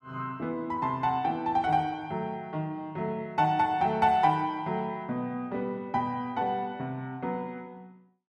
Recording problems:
none

